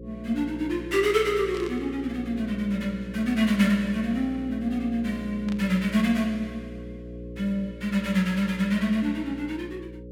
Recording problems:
electrical hum; 60 Hz, harmonics up to 540 Hz, SNR 13 dB
burst of static; at 1.5 s and at 5.5 s; peak -11 dB vs average level

